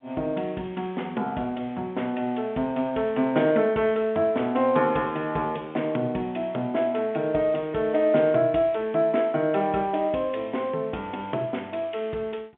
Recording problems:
phone line; 190 Hz to 3.6 kHz, G.711

